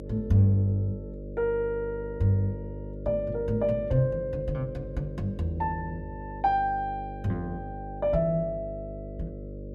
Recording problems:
hum; 50 Hz, harmonics up to 600 Hz, SNR 11 dB

